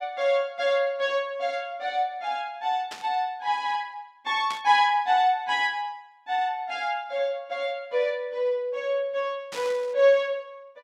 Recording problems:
static burst; at 3 s, at 4.5 s and at 9.5 s; peak -7 dB vs average level

